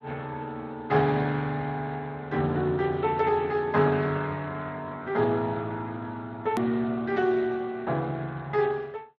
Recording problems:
codec artefacts; Speex, log-spectral distance 3 dB, nothing above 13.1 kHz
click at an edit; at 6.5 s

